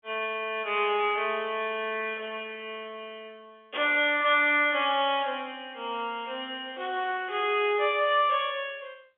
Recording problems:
phone line; 320 Hz to 3.5 kHz, G.711

